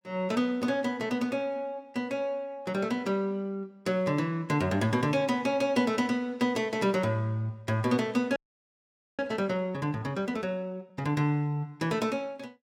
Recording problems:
audio freezing; at 8.5 s for 1 s

